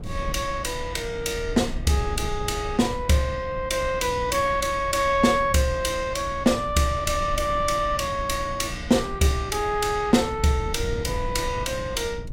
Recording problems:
electrical hum; 60 Hz, harmonics up to 300 Hz, SNR 19 dB
wind noise; below 110 Hz, SNR 12 dB

